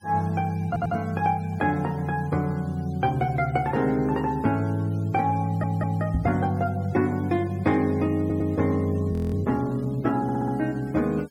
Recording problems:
noise reduction artefacts; signal-to-artefact ratio 27 dB
audio stuttering; 4 times, first at 0.5 s
microphone thump; at 6 s; peak +3 dB vs average level
audio freezing; at 9 s

